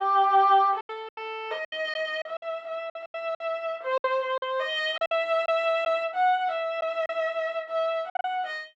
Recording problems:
lost packets; 10% of the sound replaced, filled with silence

